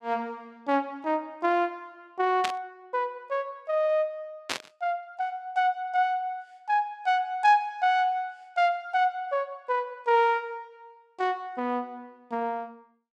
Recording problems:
static burst; at 2.5 s and at 4.5 s; peak +3 dB vs average level

